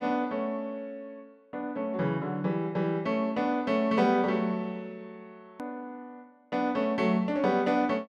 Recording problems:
click at an edit; at 5.5 s

